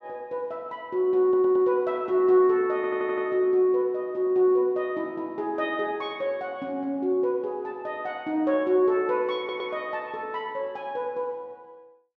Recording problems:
audio stuttering; at 1 s, at 3 s and at 9.5 s

